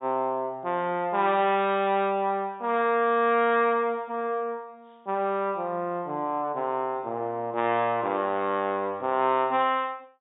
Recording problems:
treble cut off; nothing above 4 kHz

